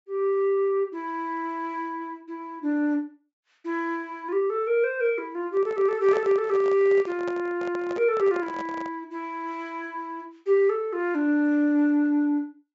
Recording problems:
treble cut off; nothing above 8 kHz
microphone handling noise; from 5.5 to 9 s; peak -5 dB vs average level

